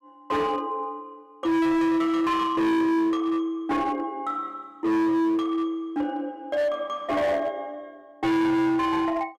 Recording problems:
distortion; hard clipping, uneven, signal-to-distortion ratio 6 dB

